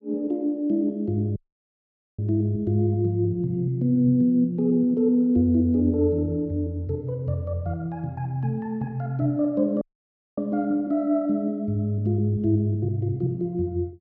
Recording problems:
dropout; at 1.5 s for 1 s and at 10 s for 0.5 s

